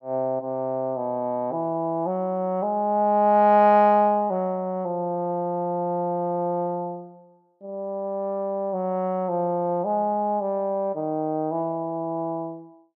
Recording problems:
none

